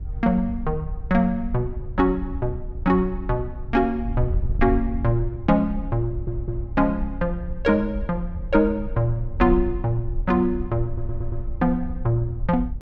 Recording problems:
wind on the microphone; below 68 Hz, SNR 8 dB
audio stuttering; at 6 s and at 11 s

